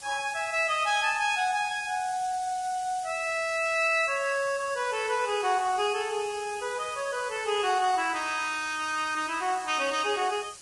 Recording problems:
lossy codec; Vorbis, log-spectral distance 8 dB, nothing above 10.1 kHz
hiss; SNR 16 dB

